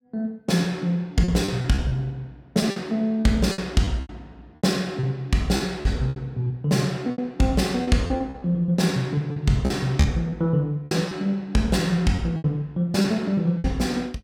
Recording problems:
packet loss; 10% of the sound replaced, filled with repeated pitch periods

